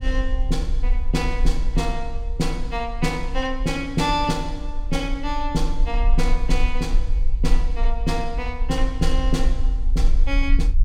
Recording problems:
low-frequency rumble; below 42 Hz, strongest tone 22 Hz, SNR 0 dB

